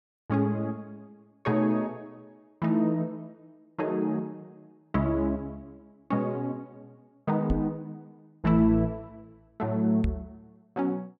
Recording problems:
microphone thump; at 7.5 s and at 10 s; peak +3 dB vs average level

